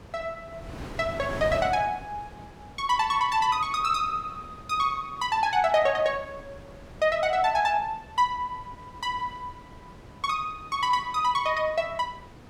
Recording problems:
wind noise; below 730 Hz, SNR 18 dB

